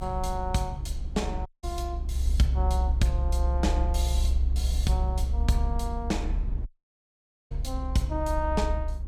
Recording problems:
low-frequency rumble; below 66 Hz, strongest tone 64 Hz, SNR -2 dB
dropout; at 1.5 s and at 6.5 s for 1 s

